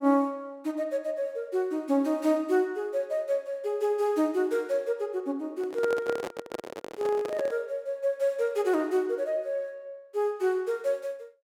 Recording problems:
microphone handling noise; from 5.5 to 7.5 s; peak 0 dB vs average level

